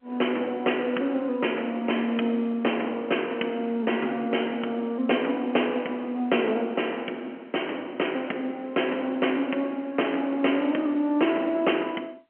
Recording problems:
phone line; 190 Hz to 3.2 kHz, G.711

